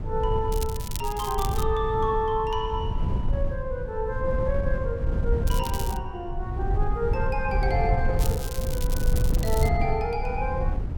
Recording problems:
wind noise; below 96 Hz, SNR 0 dB
crackling; 4 times, first at 0.5 s; loose cable, SNR 9 dB

